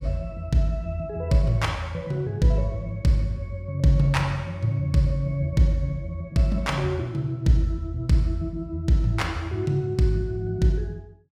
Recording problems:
none

